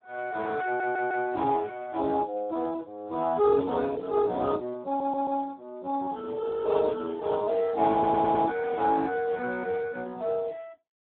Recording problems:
telephone audio; 240 Hz to 2.2 kHz, Speex
audio stuttering; at 0.5 s, at 5 s and at 8 s
frozen audio; at 6.5 s

